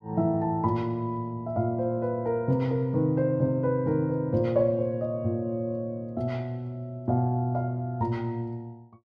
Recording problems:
none

